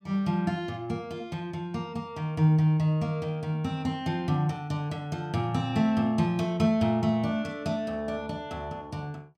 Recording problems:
none

